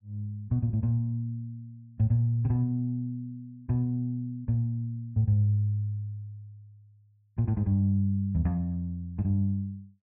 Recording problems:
none

